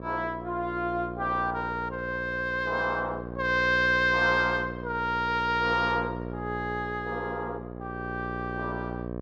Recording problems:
hum; 60 Hz, harmonics up to 1.3 kHz, SNR 9 dB

